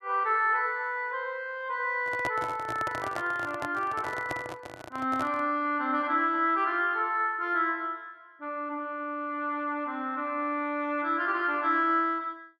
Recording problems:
microphone handling noise; from 2 to 5.5 s; peak -1 dB vs average level

